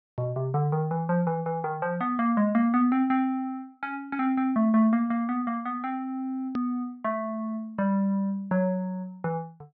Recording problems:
low-pass filter; nothing above 5.9 kHz
hard cut with a click; at 6.5 s

